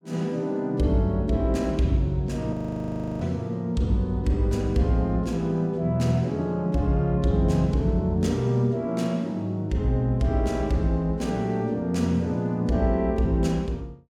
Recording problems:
frozen audio; at 2.5 s for 0.5 s

